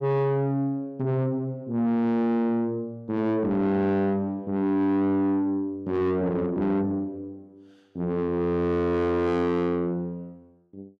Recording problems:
distortion; soft clipping, signal-to-distortion ratio 7 dB

